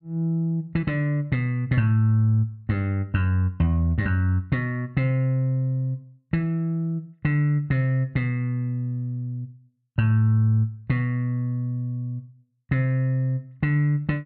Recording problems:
none

